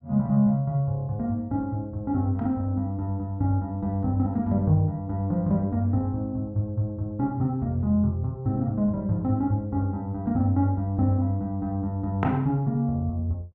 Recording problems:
none

